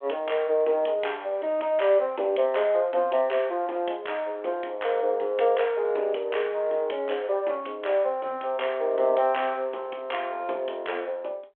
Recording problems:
phone line; 300 Hz to 3.4 kHz, G.726

